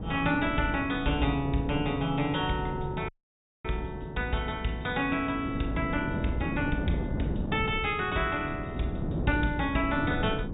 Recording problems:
treble cut off; nothing above 4 kHz
wind on the microphone; below 280 Hz, SNR 6 dB
audio cutting out; at 3 s for 0.5 s

